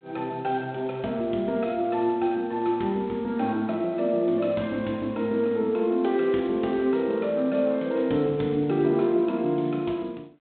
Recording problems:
telephone audio; 170 Hz to 3.9 kHz, G.726

